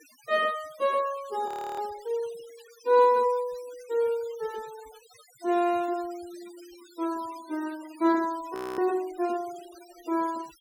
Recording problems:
noise reduction artefacts; signal-to-artefact ratio 21 dB
audio freezing; at 1.5 s and at 8.5 s

